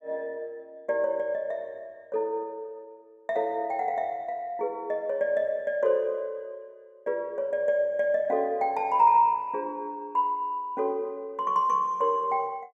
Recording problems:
none

